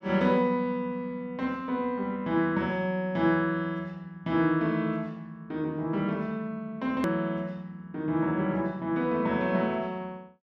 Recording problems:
edit click; at 7 s

